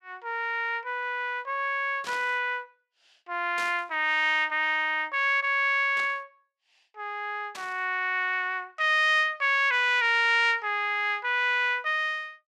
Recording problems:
burst of static; 4 times, first at 2 s; peak -9 dB vs average level

